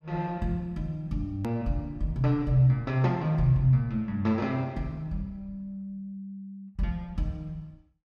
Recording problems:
hard cut with a click; at 1.5 s

